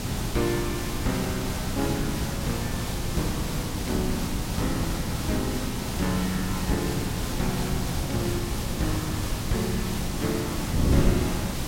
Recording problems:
hiss; slope -2 dB per octave, SNR 3 dB
wind noise; below 210 Hz, SNR 0 dB

